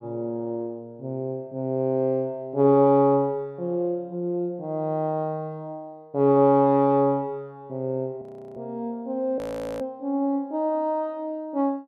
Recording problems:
audio freezing; at 8 s and at 9.5 s

